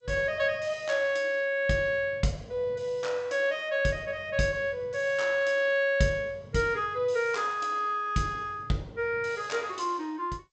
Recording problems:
codec artefacts; G.722, log-spectral distance 2 dB, nothing above 7.8 kHz

